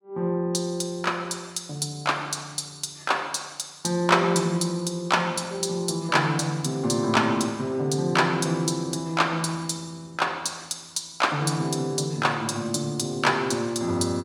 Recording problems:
none

